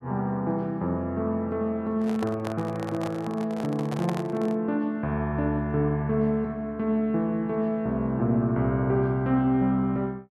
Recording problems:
handling noise; from 2 to 4.5 s; peak -2 dB vs average level

